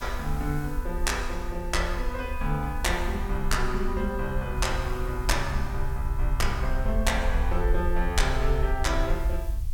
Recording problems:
hiss; slope 0 dB per octave, SNR 22 dB
low-frequency rumble; below 56 Hz, SNR 2 dB

